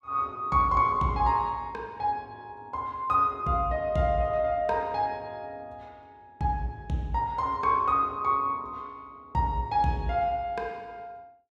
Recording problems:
none

